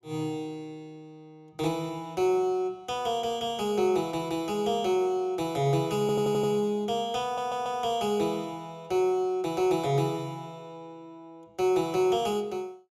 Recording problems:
audio stuttering; at 6 s and at 7 s

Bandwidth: 14.5 kHz